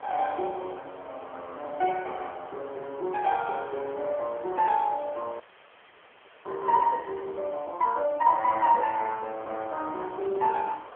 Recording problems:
telephone audio; 320 Hz to 2.3 kHz, AMR-NB
background hiss; SNR 18 dB
frozen audio; at 5.5 s for 1 s

